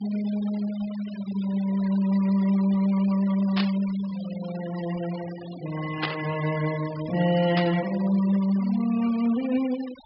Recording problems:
treble missing; nothing above 5.3 kHz
denoising artefacts; signal-to-artefact ratio 17 dB
static burst; at 3.5 s, at 6 s and at 7.5 s; peak +1 dB vs average level

